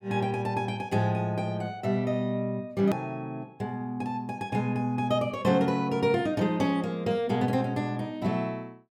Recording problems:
hard cut with a click; at 3 s

